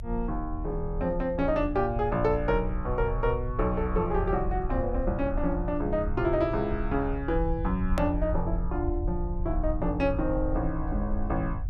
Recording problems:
low-frequency rumble; below 68 Hz, SNR 5 dB
edit click; at 8 s

